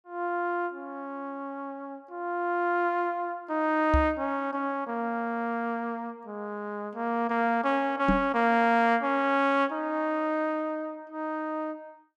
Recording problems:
microphone bump; at 4 s and at 8 s; peak +5 dB vs average level

